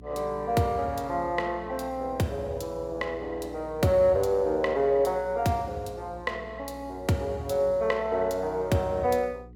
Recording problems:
electrical hum; 60 Hz, harmonics up to 420 Hz, SNR 20 dB

